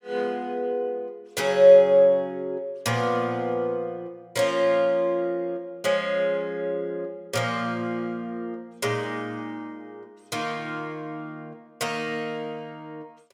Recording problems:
none

